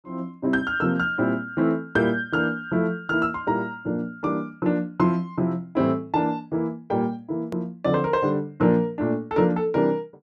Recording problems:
click at an edit; at 7.5 s

